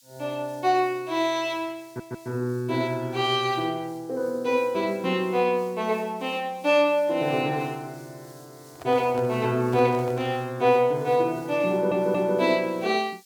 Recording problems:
background hiss; SNR 27 dB
stutter; at 2 s and at 12 s
microphone handling noise; from 8.5 to 10 s; peak -11 dB vs average level

